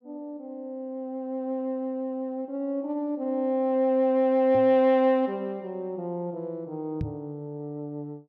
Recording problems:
microphone bump; at 4.5 s and at 7 s; peak -2 dB vs average level

